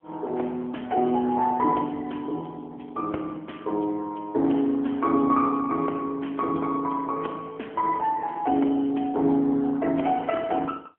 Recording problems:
telephone audio; 220 Hz to 3.4 kHz, AMR-NB

